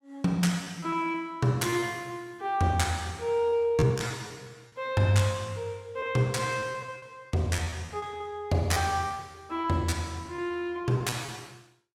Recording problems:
packet loss; 7% of the sound replaced, filled with repeated pitch periods

